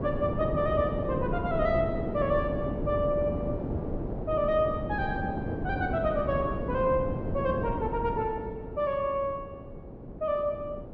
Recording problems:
treble missing; nothing above 6.6 kHz
wind on the microphone; below 410 Hz, SNR 3 dB

